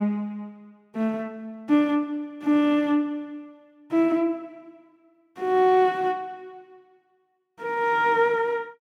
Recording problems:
none

